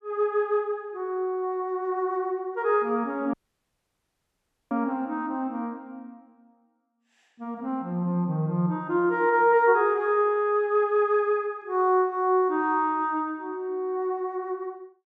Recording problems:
dropout; at 3.5 s for 1.5 s

